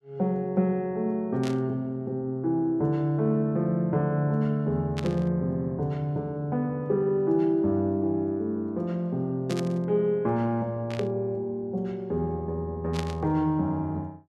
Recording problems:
static burst; 5 times, first at 1.5 s; peak -5 dB vs average level

